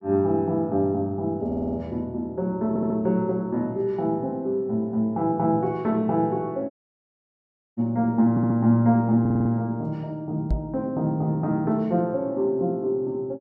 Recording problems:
stutter; 4 times, first at 1.5 s
audio cutting out; at 6.5 s for 1 s
knock on the microphone; at 11 s; peak +2 dB vs average level

